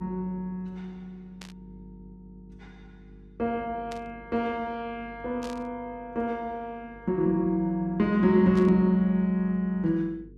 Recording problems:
mains hum; 50 Hz, harmonics up to 450 Hz, SNR 24 dB
burst of static; 4 times, first at 1.5 s; peak -12 dB vs average level

